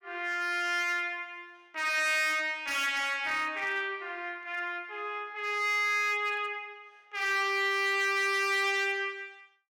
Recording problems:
distorted audio; hard clipping, uneven, signal-to-distortion ratio 11 dB

